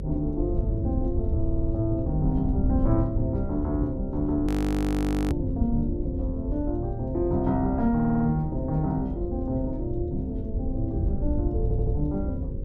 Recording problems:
hum; 50 Hz, harmonics up to 550 Hz, SNR 11 dB
rumble; below 80 Hz, SNR 8 dB
wind noise; below 110 Hz, SNR 5 dB
audio stuttering; at 1.5 s, at 8 s and at 12 s
frozen audio; at 4.5 s for 1 s

